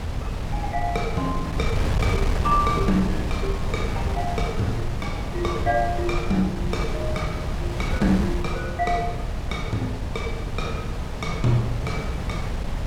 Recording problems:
wind on the microphone; below 180 Hz, SNR 1 dB

